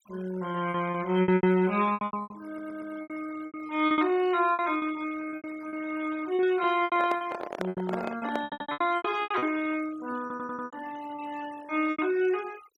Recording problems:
noise reduction artefacts; signal-to-artefact ratio 19 dB
packet loss; 16% of the sound replaced, filled with repeated pitch periods
audio stuttering; at 2.5 s, at 8.5 s and at 10 s
microphone handling noise; from 7 to 8.5 s; peak 0 dB vs average level

